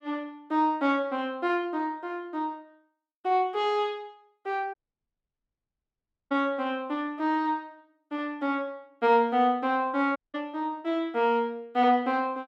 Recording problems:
dropout; at 4.5 s for 1.5 s and at 10 s

